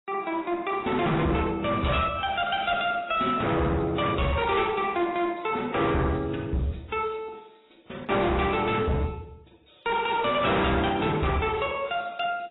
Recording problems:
lossy compression; AAC, then AAC, log-spectral distance 5 dB, nothing above 3.8 kHz
distortion; hard clipping, signal-to-distortion ratio 8 dB

